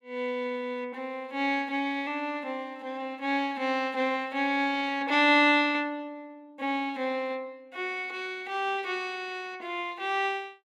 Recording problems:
none

